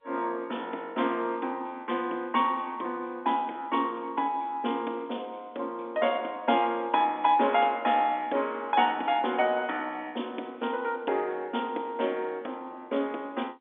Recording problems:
telephone audio; 260 Hz to 3.6 kHz, G.711

